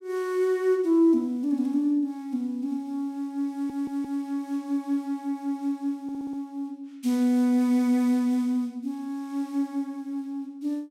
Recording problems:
audio stuttering; at 3.5 s and at 6 s

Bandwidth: 16 kHz